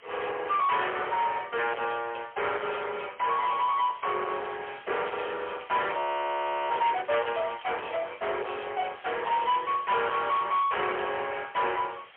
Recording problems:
phone line; 370 Hz to 3.4 kHz, AMR-NB, then MP3
distortion; soft clipping, signal-to-distortion ratio 7 dB
background hiss; SNR 22 dB
crackle; from 4.5 to 7.5 s and from 9 to 11 s; loose cable, SNR 20 dB
audio freezing; at 6 s for 0.5 s

